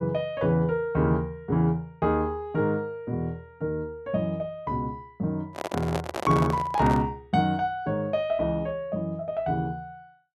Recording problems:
microphone handling noise; from 5.5 to 7 s; peak +1 dB vs average level

